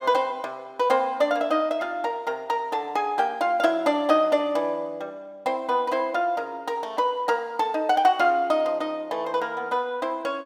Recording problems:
none

